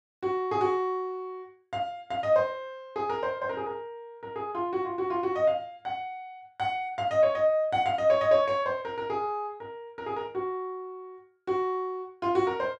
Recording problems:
none

